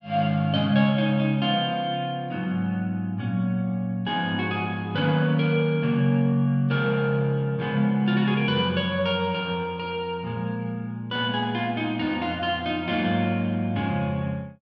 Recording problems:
none

